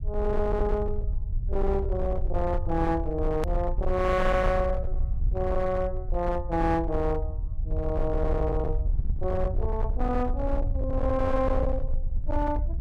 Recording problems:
distorted audio; hard clipping, signal-to-distortion ratio 12 dB
rumble; below 68 Hz, SNR 3 dB
click at an edit; at 3.5 s

